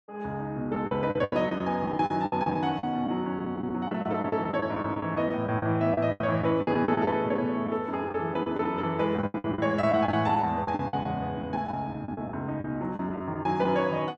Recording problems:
packet loss; 14% of the sound replaced, filled with the last packet

